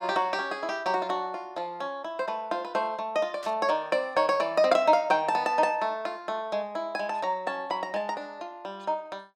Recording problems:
static burst; at 3.5 s; peak -12 dB vs average level

